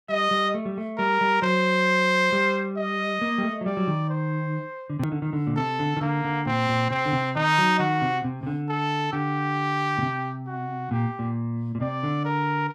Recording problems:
click at an edit; at 5 s

